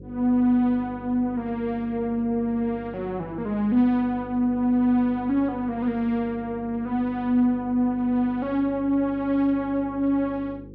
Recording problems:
hum; 50 Hz, harmonics up to 550 Hz, SNR 18 dB

